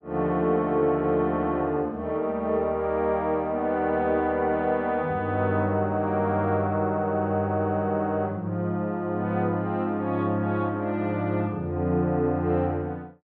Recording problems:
none

